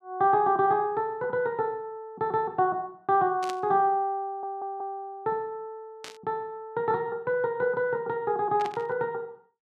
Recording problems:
burst of static; at 3.5 s, at 6 s and at 8.5 s; peak -6 dB vs average level
stutter; at 4.5 s

